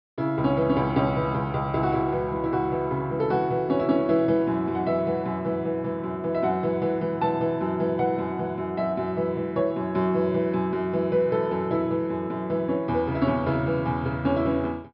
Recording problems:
treble missing; nothing above 5.5 kHz

